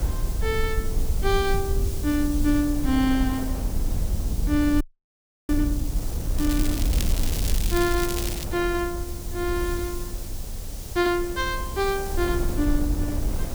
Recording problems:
hiss; slope +3 dB per octave, SNR 12 dB
low-frequency rumble; below 74 Hz, SNR 3 dB
wind on the microphone; below 690 Hz, SNR 15 dB
audio freezing; at 5 s for 0.5 s
crackling; from 6.5 to 8.5 s; loose cable, SNR 6 dB

